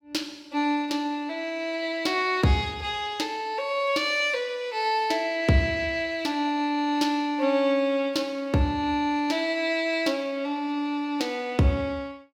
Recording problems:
none

